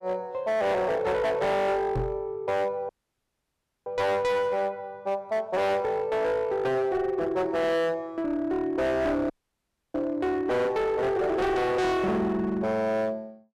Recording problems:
distorted audio; hard clipping, signal-to-distortion ratio 8 dB
knock on the microphone; at 2 s; peak 0 dB vs average level
dropout; at 3 s for 1 s and at 9.5 s for 0.5 s

